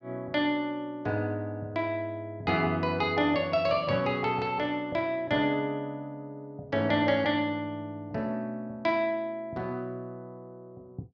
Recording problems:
none

